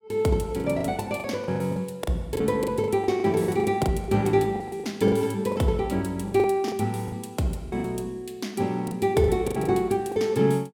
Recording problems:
lost packets; 12% of the sound replaced, filled with the last packet

